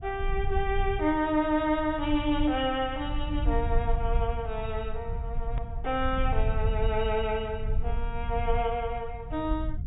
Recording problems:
low-pass filter; nothing above 4 kHz
rumble; below 66 Hz, SNR 4 dB
hard cut with a click; at 5.5 s

